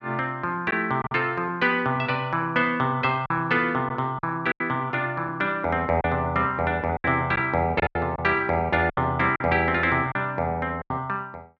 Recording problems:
lost packets; 6% of the sound replaced, filled with silence

